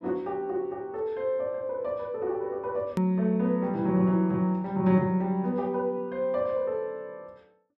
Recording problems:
click at an edit; at 3 s

